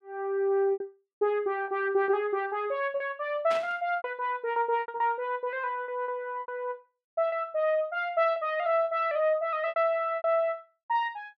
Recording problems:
lost packets; 9% of the sound replaced, filled with repeated pitch periods
static burst; at 3.5 s; peak -6 dB vs average level

